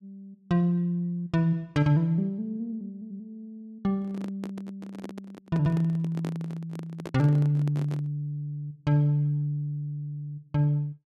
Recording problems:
handling noise; from 4 to 8 s; peak -6 dB vs average level

